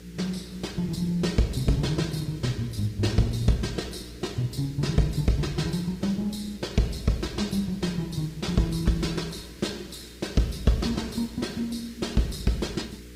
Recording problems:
lossy codec; Opus, log-spectral distance 4 dB, nothing above 15.5 kHz
hum; 60 Hz, harmonics up to 480 Hz, SNR 17 dB
hiss; SNR 23 dB

